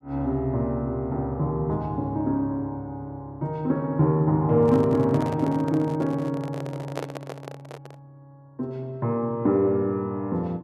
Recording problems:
handling noise; from 4.5 to 8 s; peak -2 dB vs average level

